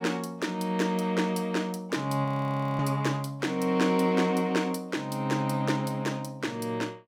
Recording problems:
frozen audio; at 2.5 s for 0.5 s

